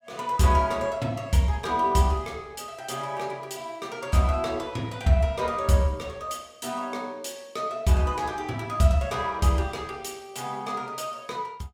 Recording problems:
none

